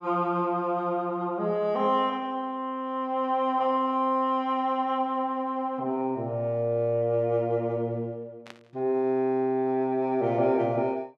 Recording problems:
static burst; at 8.5 s; peak -13 dB vs average level

